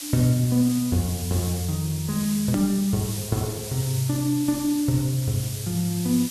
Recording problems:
hiss; slope +3 dB per octave, SNR 9 dB
edit click; at 2.5 s

